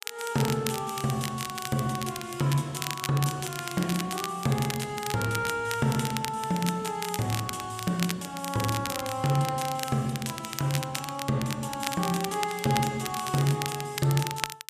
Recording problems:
crackle; vinyl, SNR 7 dB

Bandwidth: 14.5 kHz